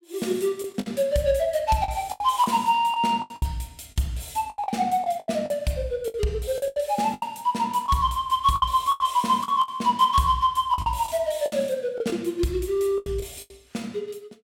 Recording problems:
packet loss; 11% of the sound replaced, filled with the last packet

